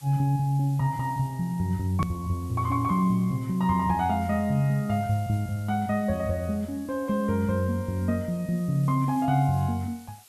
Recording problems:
background hiss; slope +2 dB per octave, SNR 25 dB
edit click; at 2 s

